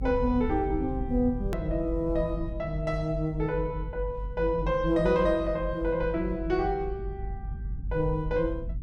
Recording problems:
rumble; below 78 Hz, strongest tone 44 Hz, SNR 8 dB
click at an edit; at 1.5 s

